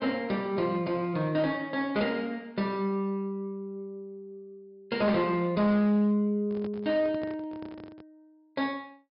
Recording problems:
low-pass filter; nothing above 5.2 kHz
distorted audio; hard clipping, uneven, signal-to-distortion ratio 12 dB
handling noise; from 6.5 to 8 s; peak -9 dB vs average level

